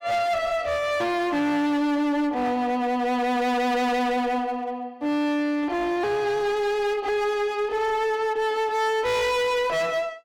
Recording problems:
distortion; hard clipping, uneven, signal-to-distortion ratio 7 dB

